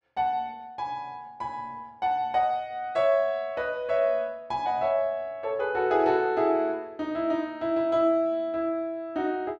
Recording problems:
none

